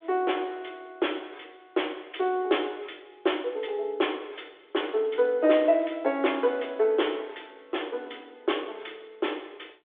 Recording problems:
phone line; 280 Hz to 3.6 kHz, G.726

